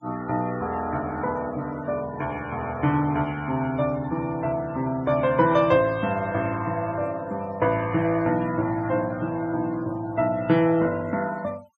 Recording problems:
denoising artefacts; signal-to-artefact ratio 21 dB

